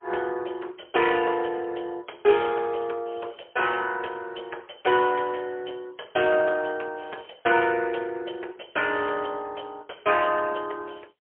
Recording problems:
phone line; 320 Hz to 3.3 kHz, AMR-NB, then MP3

